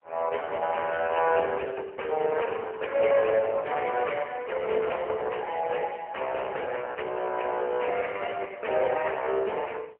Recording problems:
telephone audio; 340 Hz to 3 kHz, AMR-NB, then MP3

